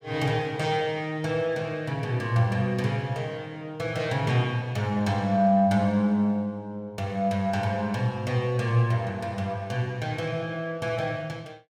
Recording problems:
none

